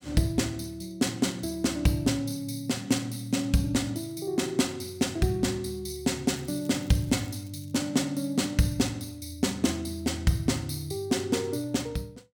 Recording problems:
crackling; from 6.5 to 8 s; loose cable, SNR 24 dB

